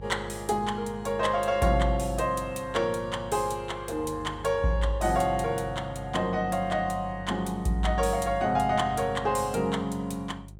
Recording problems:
hum; 50 Hz, harmonics up to 550 Hz, SNR 15 dB

